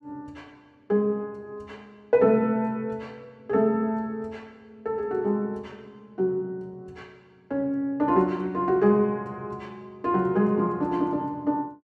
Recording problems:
none

